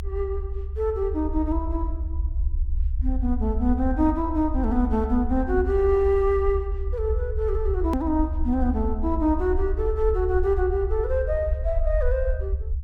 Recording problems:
low-frequency rumble; below 68 Hz, SNR 4 dB
click at an edit; at 8 s

